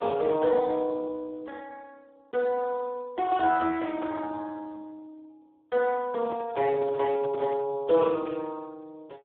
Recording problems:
telephone audio; 260 Hz to 2.5 kHz, Speex
handling noise; from 6 to 7.5 s; peak -7 dB vs average level

